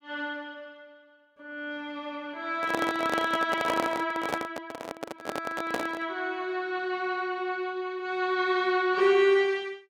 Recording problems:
microphone handling noise; from 2.5 to 6 s; peak +2 dB vs average level

